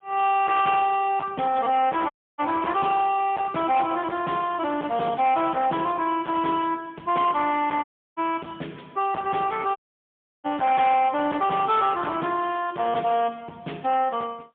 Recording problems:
telephone audio; 260 Hz to 3.5 kHz, AMR-NB, then MP3
distortion; hard clipping, signal-to-distortion ratio 10 dB
audio cutting out; at 2 s, at 8 s and at 10 s for 0.5 s

